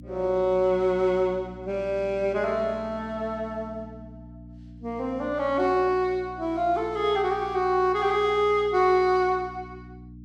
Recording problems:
hum; 60 Hz, harmonics up to 300 Hz, SNR 19 dB

